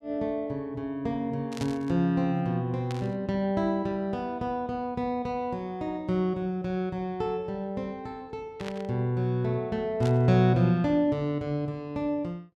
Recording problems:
burst of static; 4 times, first at 1.5 s; peak -7 dB vs average level

